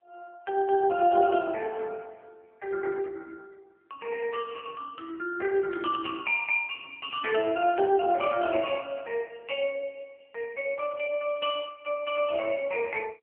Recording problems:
telephone audio; 340 Hz to 2.8 kHz, AMR-NB

